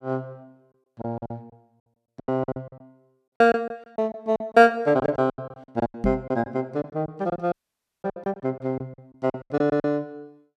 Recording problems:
packet loss; 18% of the sound replaced, filled with silence
microphone thump; at 6 s; peak +3 dB vs average level
dropout; at 7.5 s

